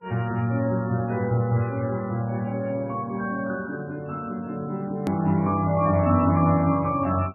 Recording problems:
lossy compression; MP3, log-spectral distance 2 dB, nothing above 13.1 kHz
edit click; at 5 s

